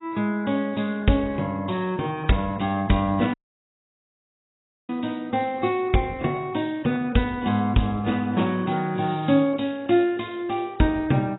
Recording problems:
lossy codec; AAC, log-spectral distance 5 dB, nothing above 3.8 kHz
audio cutting out; at 3.5 s for 1.5 s

